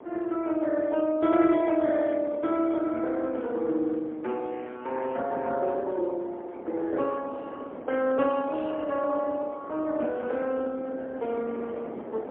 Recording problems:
phone line; 240 Hz to 3.4 kHz, AMR-NB, then MP3
wind noise; below 680 Hz, SNR 14 dB

